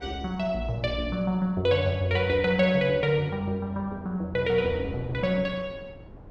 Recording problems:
wind noise; below 390 Hz, SNR 20 dB

